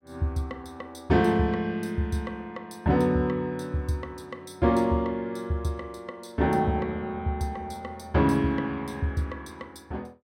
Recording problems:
none

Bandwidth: 16 kHz